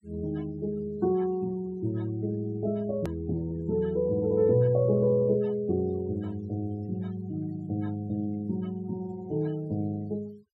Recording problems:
noise reduction artefacts; signal-to-artefact ratio 26 dB
hard cut with a click; at 3 s

